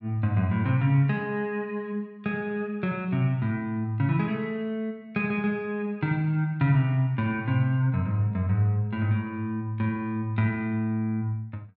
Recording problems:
none

